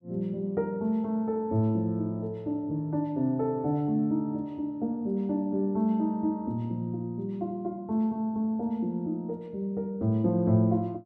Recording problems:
none

